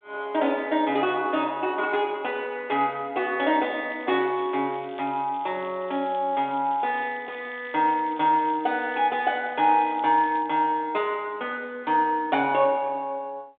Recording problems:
telephone audio; 220 Hz to 3.7 kHz, G.726
crackling; from 4 to 10 s; loose cable, SNR 27 dB

